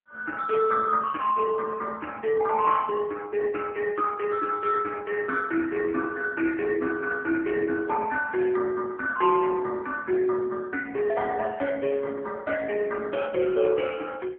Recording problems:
phone line; 260 Hz to 2.3 kHz, AMR-NB

